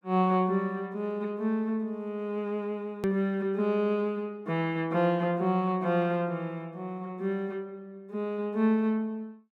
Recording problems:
click at an edit; at 3 s

